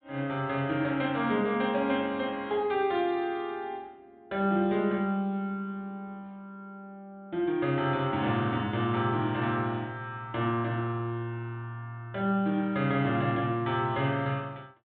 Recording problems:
treble missing; nothing above 4 kHz

